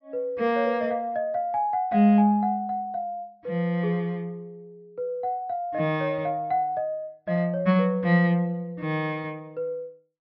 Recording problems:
low-pass filter; nothing above 5.5 kHz

